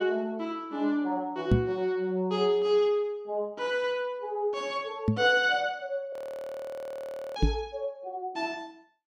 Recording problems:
knock on the microphone; at 1.5 s, at 5 s and at 7.5 s; peak +9 dB vs average level
audio freezing; at 6 s for 1 s

